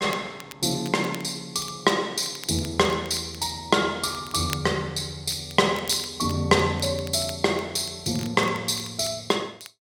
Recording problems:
crackling; vinyl, SNR 19 dB

